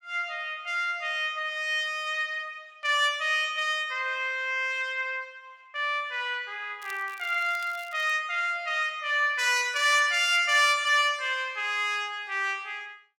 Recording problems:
crackling; from 7 to 8 s; loose cable, SNR 24 dB

